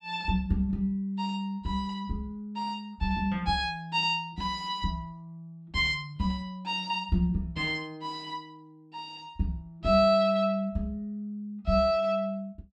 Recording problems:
none

